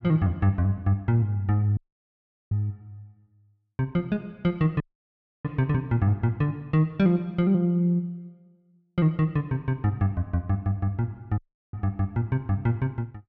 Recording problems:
dropout; at 2 s for 0.5 s, at 5 s for 0.5 s and at 11 s

